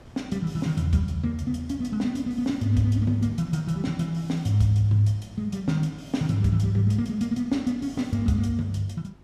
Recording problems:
hum; 50 Hz, harmonics up to 400 Hz, SNR 28 dB
wind on the microphone; below 950 Hz, SNR 29 dB

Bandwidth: 15 kHz